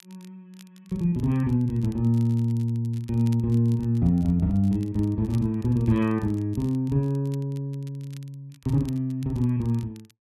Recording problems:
crackle; vinyl, SNR 29 dB

